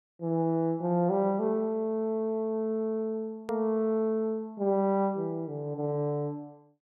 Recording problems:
click at an edit; at 3.5 s

